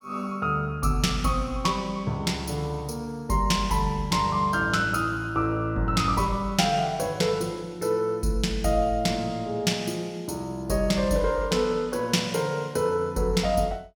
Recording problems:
none

